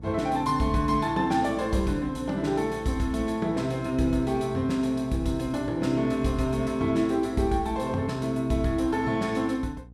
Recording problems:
electrical hum; 60 Hz, harmonics up to 540 Hz, SNR 19 dB

